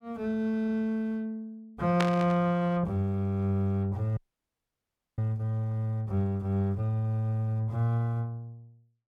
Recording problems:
static burst; at 2 s; peak +2 dB vs average level
frozen audio; at 4 s for 1 s

